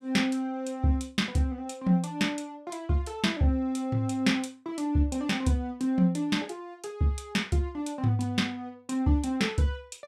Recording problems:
none

